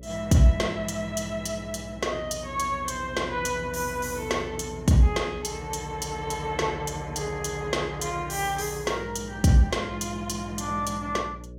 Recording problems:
electrical hum; 60 Hz, harmonics up to 600 Hz, SNR 15 dB

